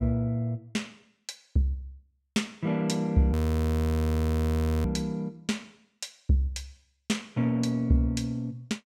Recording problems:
frozen audio; at 3.5 s for 1.5 s

